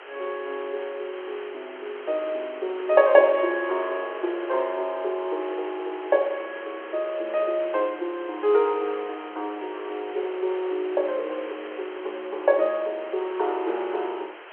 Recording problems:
phone line; 320 Hz to 3.4 kHz, G.711
hiss; SNR 15 dB

